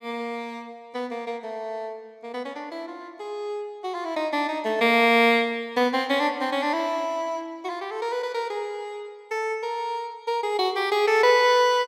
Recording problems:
none

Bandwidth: 16 kHz